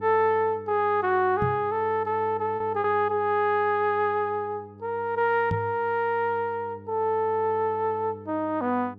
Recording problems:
electrical hum; 50 Hz, harmonics up to 900 Hz, SNR 20 dB
lost packets; 0.9% of the sound replaced, filled with repeated pitch periods
knock on the microphone; at 1.5 s and at 5.5 s; peak 0 dB vs average level

